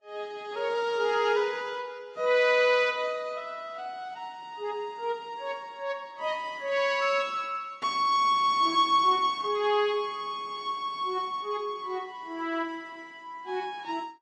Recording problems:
lossy codec; Vorbis, log-spectral distance 2 dB, nothing above 11 kHz

